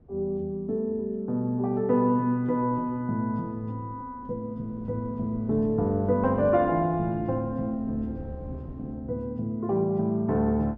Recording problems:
wind on the microphone; below 270 Hz, SNR 18 dB

